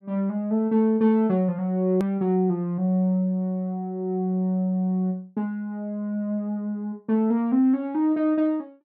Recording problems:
edit click; at 2 s

